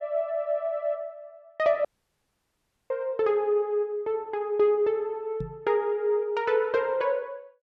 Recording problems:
dropout; at 2 s for 1 s
microphone thump; at 5.5 s; peak -4 dB vs average level

